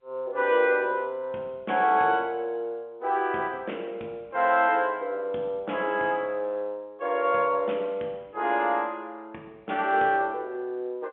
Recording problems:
phone line; 260 Hz to 3.5 kHz, G.711

